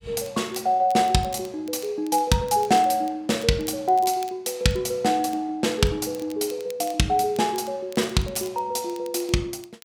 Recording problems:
crackle; vinyl, SNR 23 dB

